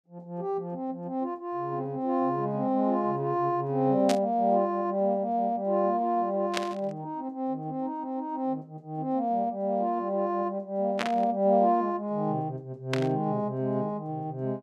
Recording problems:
static burst; 4 times, first at 4 s; peak +2 dB vs average level

